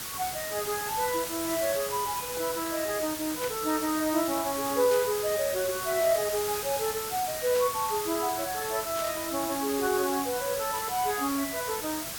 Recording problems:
hiss; slope 0 dB per octave, SNR 4 dB
static burst; 4 times, first at 3.5 s; peak -6 dB vs average level

